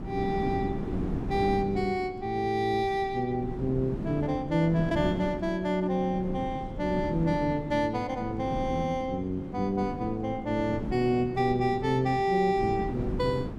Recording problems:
wind on the microphone; below 310 Hz, SNR 9 dB

